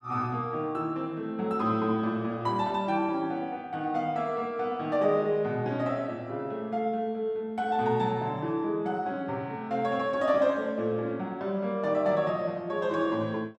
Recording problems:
none

